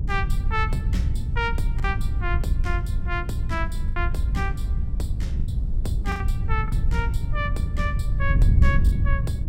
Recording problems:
rumble; below 76 Hz, SNR 0 dB
wind on the microphone; below 100 Hz, SNR -4 dB
packet loss; 4% of the sound replaced, filled with the last packet

